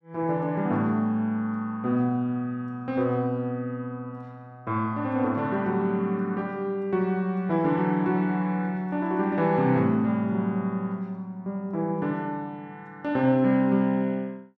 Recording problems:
none

